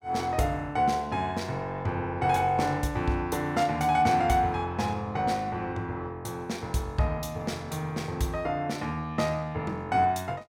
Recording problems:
none

